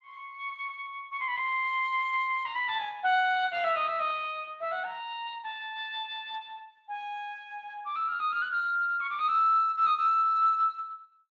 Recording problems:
lossy compression; Speex, log-spectral distance 3 dB

